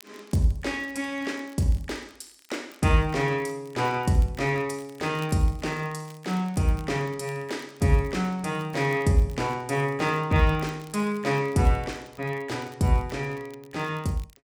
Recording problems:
crackle; vinyl, SNR 27 dB

